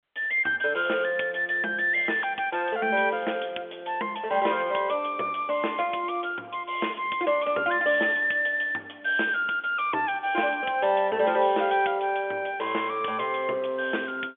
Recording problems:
phone line; 260 Hz to 3.4 kHz, G.711

